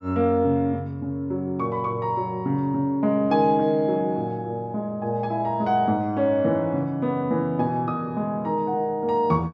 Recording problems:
none

